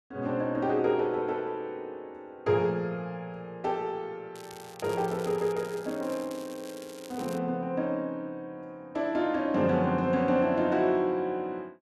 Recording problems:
crackle; from 4.5 to 7.5 s; loose cable, SNR 19 dB

